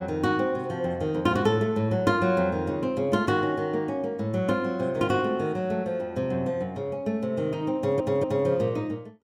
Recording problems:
stutter; at 8 s

